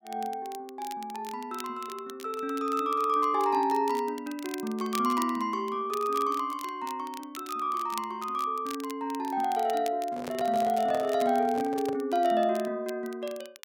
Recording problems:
crackling; vinyl, SNR 17 dB
microphone handling noise; from 10 to 12 s; peak -5 dB vs average level

